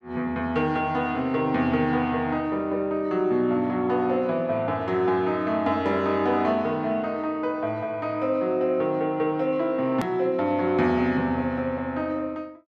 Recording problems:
edit click; at 10 s

